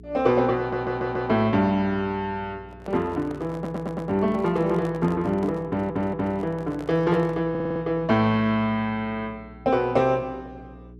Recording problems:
hum; 60 Hz, harmonics up to 420 Hz, SNR 21 dB
stutter; 4 times, first at 0.5 s
microphone handling noise; from 2.5 to 7.5 s; peak -9 dB vs average level

